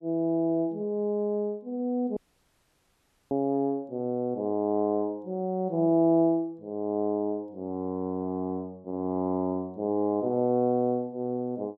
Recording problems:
dropout; at 2 s for 1 s

